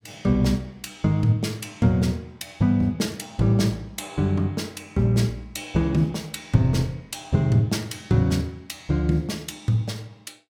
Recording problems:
none

